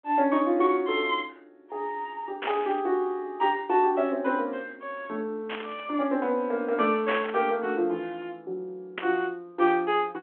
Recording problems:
phone line; 240 Hz to 3.5 kHz, G.726
burst of static; 4 times, first at 2.5 s; peak -1 dB vs average level

